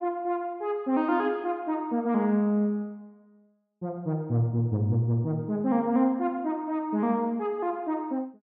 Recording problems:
none

